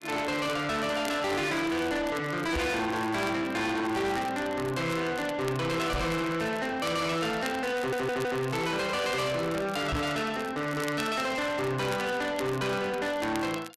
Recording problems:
distorted audio; soft clipping, signal-to-distortion ratio 8 dB
crackling; vinyl, SNR 17 dB
knock on the microphone; at 2.5 s, at 6 s and at 10 s; peak +3 dB vs average level
stutter; at 8 s

